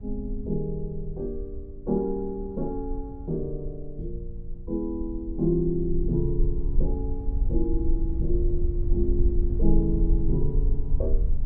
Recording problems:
low-frequency rumble; below 50 Hz, strongest tone 20 Hz, SNR 0 dB

